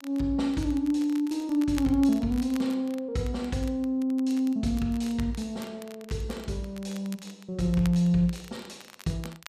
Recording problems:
crackle; vinyl, SNR 21 dB

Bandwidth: 14.5 kHz